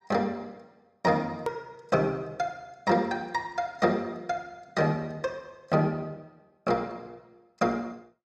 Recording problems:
click at an edit; at 1.5 s

